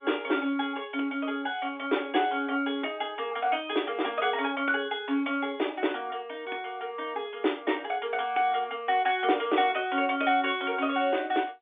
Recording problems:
phone line; 240 Hz to 3.6 kHz, G.711

